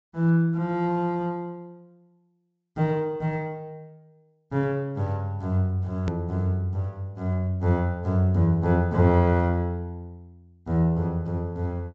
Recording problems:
low-pass filter; nothing above 8 kHz
click at an edit; at 6 s

